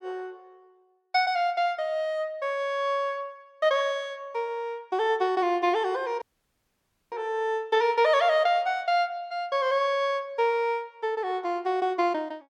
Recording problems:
audio cutting out; at 6 s for 1 s

